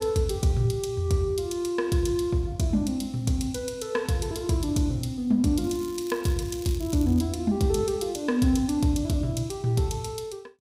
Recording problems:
crackle; from 5.5 to 7 s; loose cable, SNR 19 dB

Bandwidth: 15.5 kHz